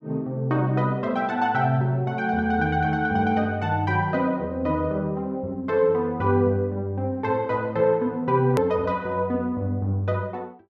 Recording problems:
hard cut with a click; at 8.5 s

